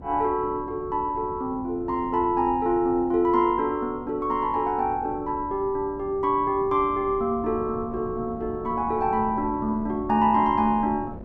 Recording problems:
wind noise; below 340 Hz, SNR 17 dB

